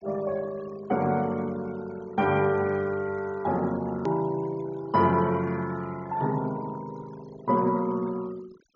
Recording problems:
treble missing; nothing above 7.1 kHz
noise reduction artefacts; signal-to-artefact ratio 22 dB
edit click; at 4 s

